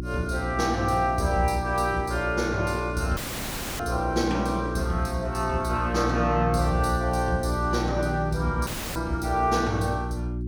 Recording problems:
hum; 60 Hz, harmonics up to 360 Hz, SNR 6 dB
audio cutting out; at 3 s for 0.5 s and at 8.5 s

